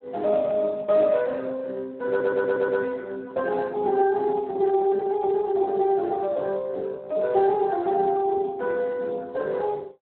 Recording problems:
phone line; 280 Hz to 2 kHz, Speex
stutter; at 2 s

